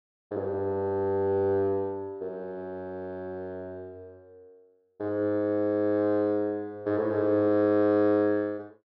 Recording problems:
treble cut off; nothing above 5.5 kHz

